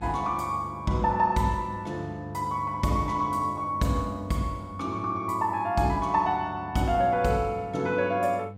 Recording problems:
electrical hum; 50 Hz, harmonics up to 800 Hz, SNR 17 dB

